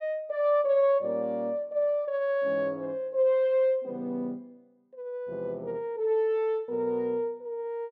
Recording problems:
none

